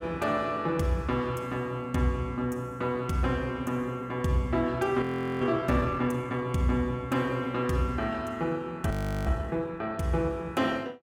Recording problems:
audio freezing; at 5 s and at 9 s

